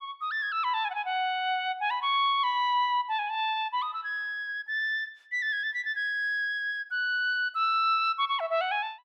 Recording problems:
none

